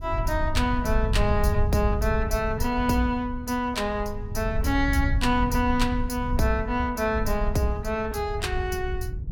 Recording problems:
wind on the microphone; below 88 Hz, SNR 4 dB

